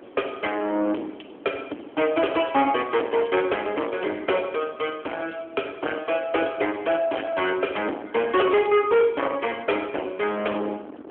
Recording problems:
phone line; 240 Hz to 3.3 kHz, AMR-NB
distorted audio; hard clipping, uneven, signal-to-distortion ratio 8 dB
wind on the microphone; below 800 Hz, SNR 20 dB

